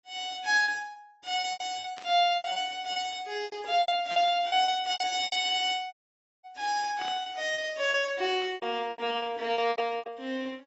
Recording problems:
lossy compression; AAC, log-spectral distance 3 dB, nothing above 7.6 kHz
packet loss; 15% of the sound replaced, filled with repeated pitch periods
burst of static; 4 times, first at 2 s; peak -10 dB vs average level
audio cutting out; at 6 s for 0.5 s

